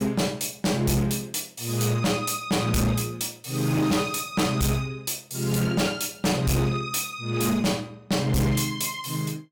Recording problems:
distorted audio; hard clipping, uneven, signal-to-distortion ratio 7 dB

